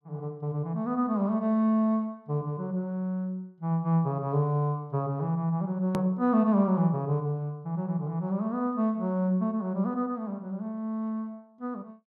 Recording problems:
hard cut with a click; at 6 s

